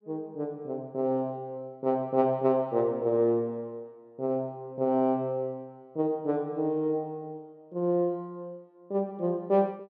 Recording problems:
none

